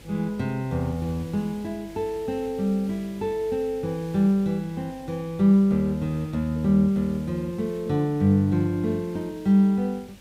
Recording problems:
electrical hum; 50 Hz, harmonics up to 550 Hz, SNR 26 dB
background hiss; slope -2 dB per octave, SNR 25 dB

